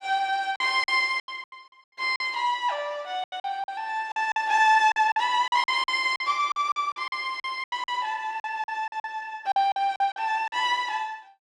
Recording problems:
packet loss; 13% of the sound replaced, filled with silence

